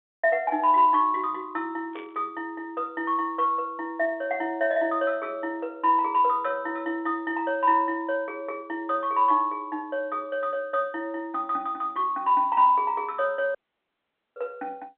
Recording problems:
telephone audio; 220 Hz to 3.6 kHz, G.711
burst of static; at 2 s; peak -16 dB vs average level
dropout; at 14 s for 1 s

